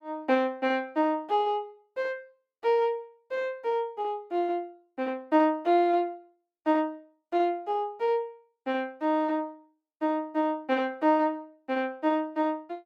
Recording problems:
none

